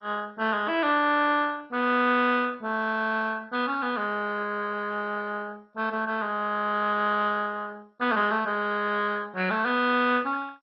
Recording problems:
lossy compression; MP2, log-spectral distance 4 dB

